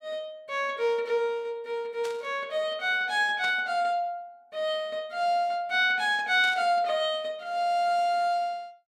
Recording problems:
static burst; at 2 s, at 3.5 s and at 6.5 s; peak -9 dB vs average level

